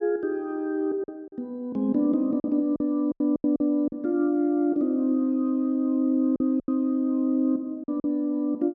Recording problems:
packet loss; 7% of the sound replaced, filled with silence

